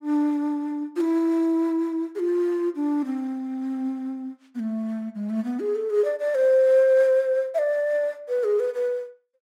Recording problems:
none

